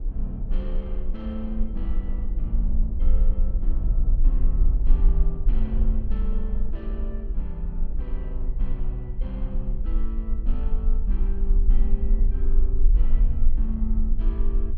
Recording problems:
rumble; below 42 Hz, strongest tone 20 Hz, SNR -11 dB
wind noise; below 360 Hz, SNR 10 dB

